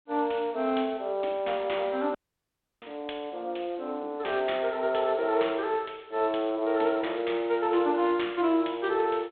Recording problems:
phone line; 260 Hz to 3.6 kHz, G.726
dropout; at 2 s for 0.5 s

